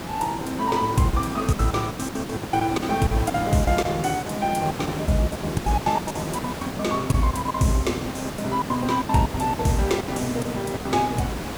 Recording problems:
hiss; slope -5 dB per octave, SNR 7 dB
lost packets; 18% of the sound replaced, filled with silence

